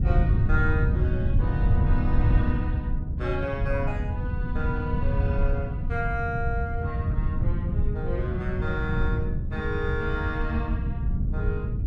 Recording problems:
wind on the microphone; below 120 Hz, SNR -5 dB

